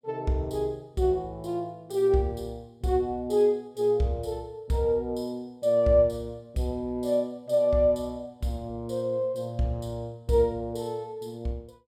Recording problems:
none

